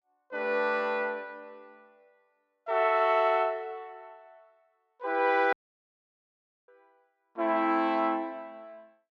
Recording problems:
dropout; at 5.5 s for 1 s

